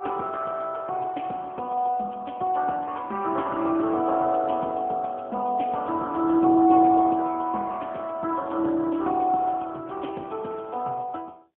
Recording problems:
phone line; 220 Hz to 3.6 kHz, AMR-NB, then MP3

